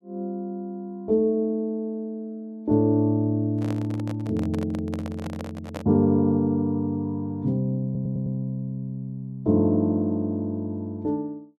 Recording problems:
handling noise; from 3.5 to 6 s; peak -5 dB vs average level
audio stuttering; at 8 s

